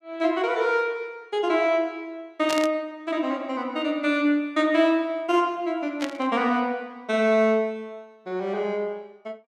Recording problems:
burst of static; at 2.5 s and at 6 s; peak -3 dB vs average level

